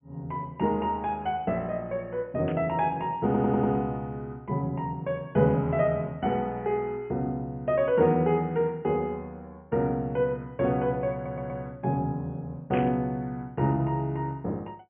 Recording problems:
low-pass filter; nothing above 3.2 kHz
static burst; at 2.5 s and at 13 s; peak -6 dB vs average level
stutter; at 3.5 s and at 11 s

